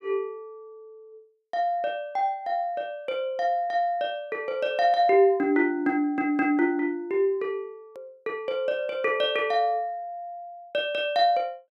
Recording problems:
hard cut with a click; at 8 s

